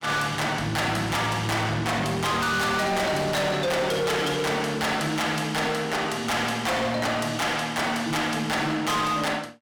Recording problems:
distorted audio; hard clipping, uneven, signal-to-distortion ratio 6 dB

